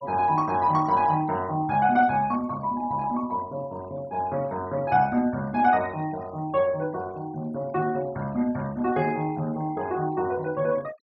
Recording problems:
denoising artefacts; signal-to-artefact ratio 23 dB

